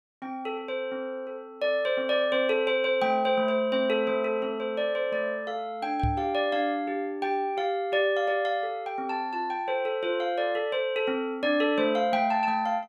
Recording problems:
knock on the microphone; at 6 s; peak +2 dB vs average level

